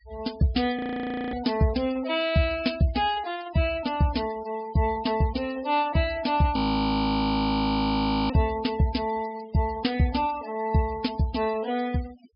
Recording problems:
low-pass filter; nothing above 5.5 kHz
noise reduction artefacts; signal-to-artefact ratio 17 dB
frozen audio; at 1 s for 0.5 s and at 6.5 s for 1.5 s

